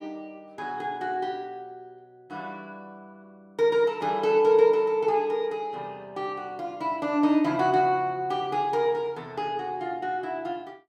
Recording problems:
none

